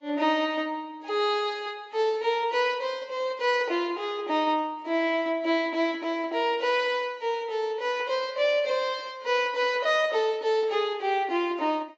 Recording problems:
lossy compression; AAC, log-spectral distance 2 dB, nothing above 7.3 kHz

